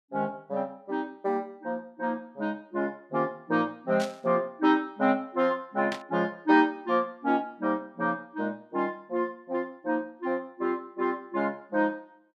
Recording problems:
burst of static; at 4 s and at 6 s; peak -4 dB vs average level

